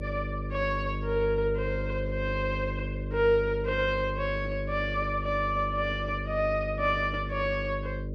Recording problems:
electrical hum; 50 Hz, harmonics up to 600 Hz, SNR 5 dB

